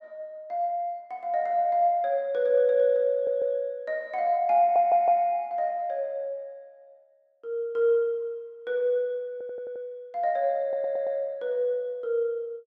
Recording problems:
stutter; 4 times, first at 3 s

